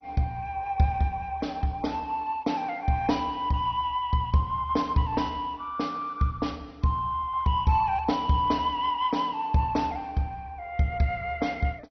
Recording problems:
lossy compression; MP2, log-spectral distance 3 dB, nothing above 5.8 kHz

